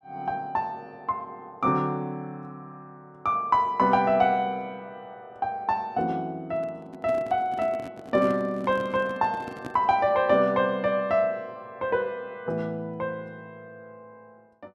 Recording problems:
microphone handling noise; from 6.5 to 10 s; peak -7 dB vs average level

